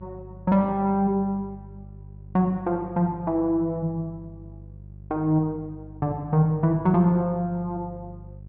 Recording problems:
electrical hum; 50 Hz, harmonics up to 400 Hz, SNR 19 dB

